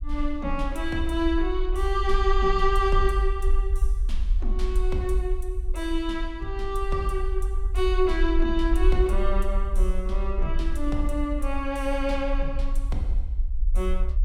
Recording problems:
rumble; below 48 Hz, SNR 1 dB

